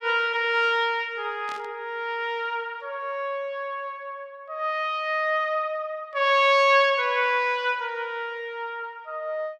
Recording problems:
static burst; at 1.5 s; peak -12 dB vs average level

